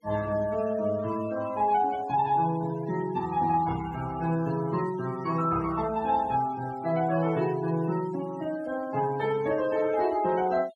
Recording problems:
denoising artefacts; signal-to-artefact ratio 18 dB

